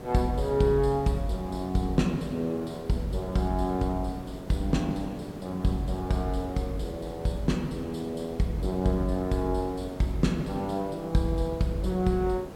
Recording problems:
hiss; slope -8 dB per octave, SNR 14 dB
wind noise; below 390 Hz, SNR 22 dB

